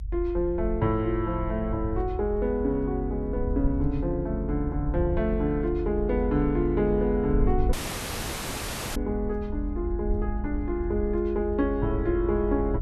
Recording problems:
rumble; below 72 Hz, strongest tone 46 Hz, SNR 6 dB
audio cutting out; at 7.5 s for 1 s

